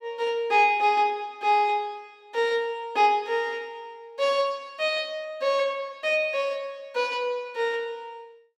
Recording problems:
none

